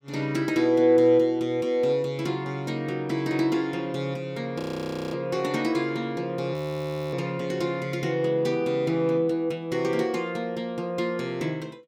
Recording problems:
audio freezing; at 4.5 s for 0.5 s and at 6.5 s for 0.5 s

